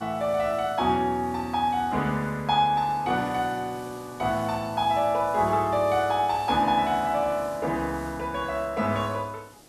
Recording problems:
background hiss; SNR 22 dB

